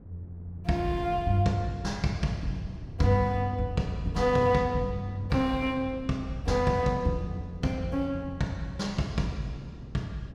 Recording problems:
wind on the microphone; below 230 Hz, SNR 17 dB

